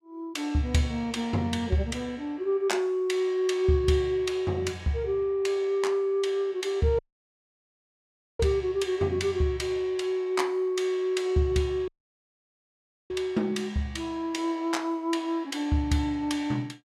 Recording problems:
dropout; at 7 s for 1.5 s and at 12 s for 1 s

